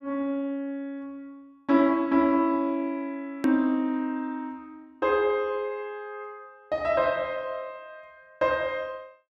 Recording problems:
click at an edit; at 3.5 s

